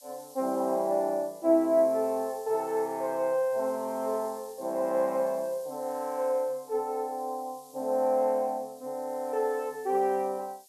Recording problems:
background hiss; SNR 23 dB

